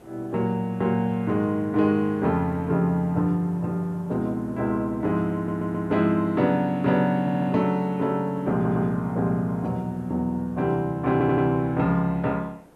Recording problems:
hiss; slope -9 dB per octave, SNR 25 dB
stutter; 4 times, first at 5.5 s

